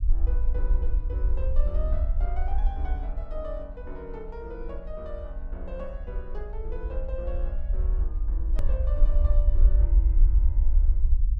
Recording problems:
low-frequency rumble; below 52 Hz, SNR -13 dB
edit click; at 8.5 s

